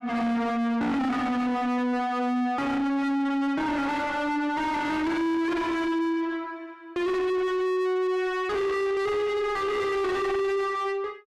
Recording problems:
distorted audio; soft clipping, signal-to-distortion ratio 7 dB

